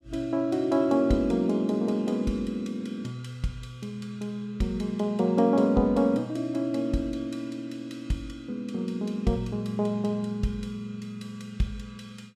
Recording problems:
none

